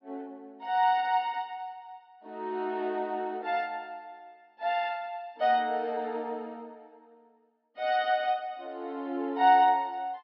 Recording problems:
treble missing; nothing above 5.5 kHz

